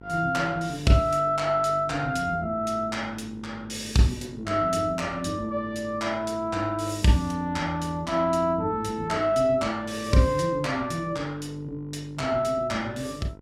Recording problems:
hum; 50 Hz, harmonics up to 1.1 kHz, SNR 20 dB

